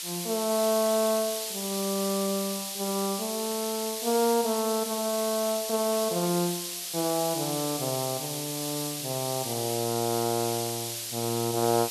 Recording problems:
hiss; SNR 3 dB

